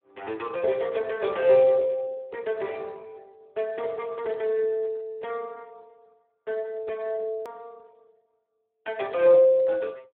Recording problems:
telephone audio; 240 Hz to 3.6 kHz, Speex
hard cut with a click; at 7.5 s

